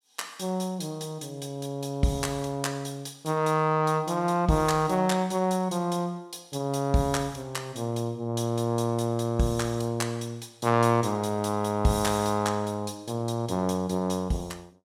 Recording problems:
none

